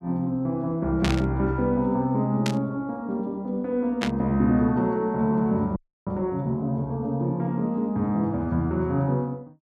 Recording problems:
static burst; at 1 s, at 2.5 s and at 4 s; peak +1 dB vs average level
frozen audio; at 6 s

